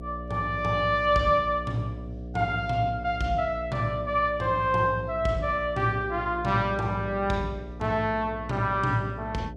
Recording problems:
hum; 60 Hz, harmonics up to 720 Hz, SNR 12 dB

